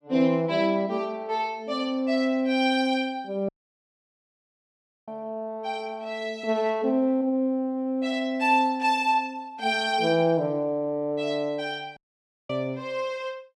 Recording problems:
audio cutting out; at 3.5 s for 1.5 s and at 12 s for 0.5 s

